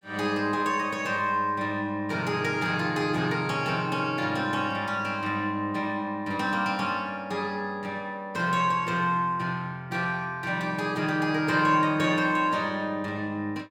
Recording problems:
none

